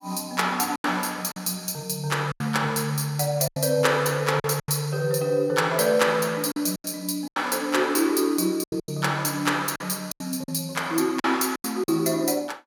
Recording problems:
lost packets; 9% of the sound replaced, filled with silence

